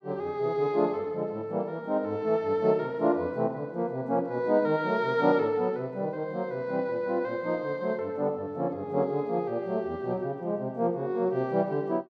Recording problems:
none

